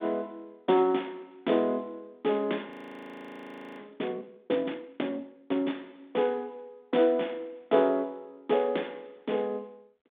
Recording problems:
phone line; 240 Hz to 3.6 kHz, G.726
audio freezing; at 2.5 s for 1 s

